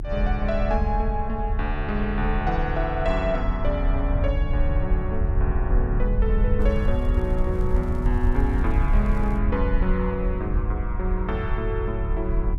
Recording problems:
low-frequency rumble; below 68 Hz, SNR -2 dB
crackle; from 6.5 to 9.5 s; loose cable, SNR 28 dB

